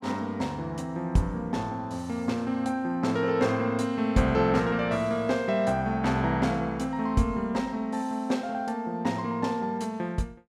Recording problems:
none

